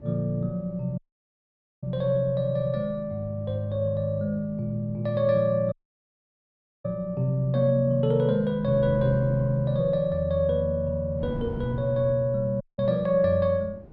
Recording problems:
wind on the microphone; below 270 Hz, SNR 17 dB
audio cutting out; at 1 s for 1 s, at 5.5 s for 1 s and at 13 s

